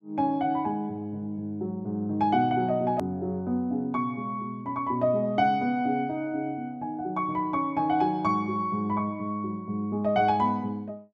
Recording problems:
edit click; at 3 s

